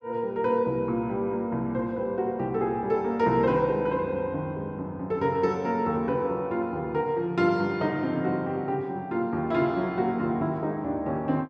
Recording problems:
none

